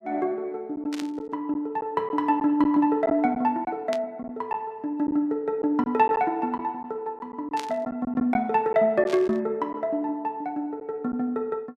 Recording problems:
lost packets; 4% of the sound replaced, filled with silence
burst of static; 4 times, first at 1 s; peak -5 dB vs average level

